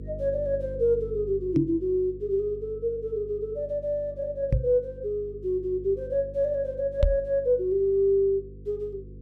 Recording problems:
hum; 50 Hz, harmonics up to 500 Hz, SNR 16 dB
knock on the microphone; at 1.5 s, at 4.5 s and at 7 s; peak +7 dB vs average level

